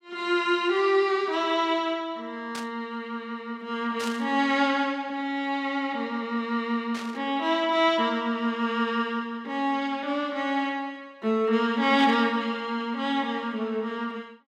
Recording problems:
burst of static; 4 times, first at 2.5 s; peak -6 dB vs average level

